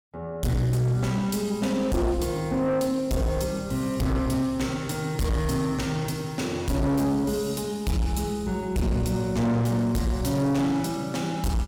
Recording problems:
distorted audio; soft clipping, signal-to-distortion ratio 8 dB

